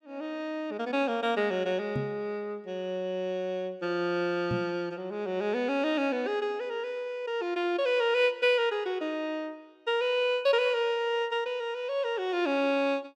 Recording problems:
microphone bump; at 2 s and at 4.5 s; peak 0 dB vs average level

